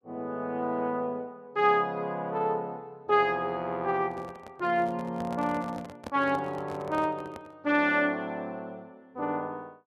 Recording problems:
microphone handling noise; from 4 to 7.5 s; peak -6 dB vs average level

